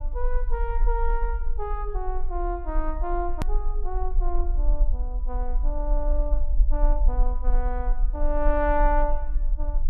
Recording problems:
rumble; below 38 Hz, SNR -3 dB
edit click; at 3.5 s

